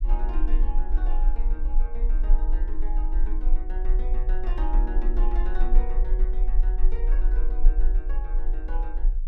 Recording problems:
low-frequency rumble; below 36 Hz, strongest tone 24 Hz, SNR -13 dB

